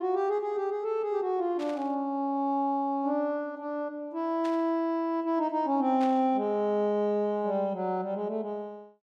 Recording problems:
burst of static; at 1.5 s, at 4.5 s and at 6 s; peak -11 dB vs average level

